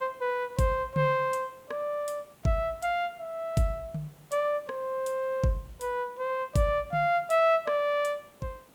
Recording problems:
hiss; slope -5 dB per octave, SNR 28 dB

